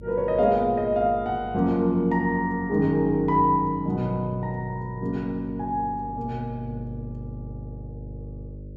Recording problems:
hum; 50 Hz, harmonics up to 600 Hz, SNR 16 dB

